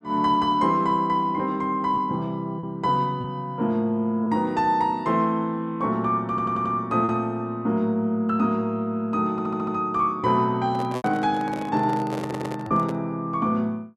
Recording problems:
lost packets; 2% of the sound replaced, filled with repeated pitch periods
stutter; at 6.5 s, at 9.5 s and at 12 s
microphone handling noise; from 11 to 13 s; peak -5 dB vs average level

